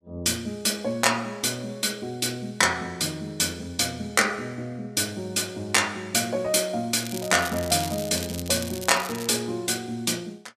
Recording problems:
crackling; from 7 to 9.5 s; loose cable, SNR 11 dB

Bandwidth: 14.5 kHz